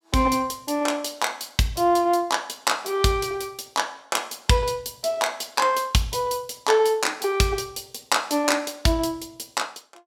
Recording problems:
none

